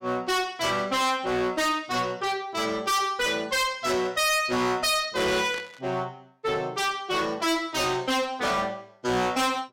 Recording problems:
distortion; hard clipping, uneven, signal-to-distortion ratio 5 dB
static burst; at 5.5 s; peak -10 dB vs average level

